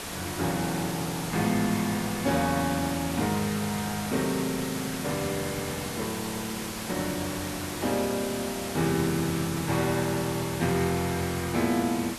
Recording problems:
hiss; slope -2 dB per octave, SNR 6 dB

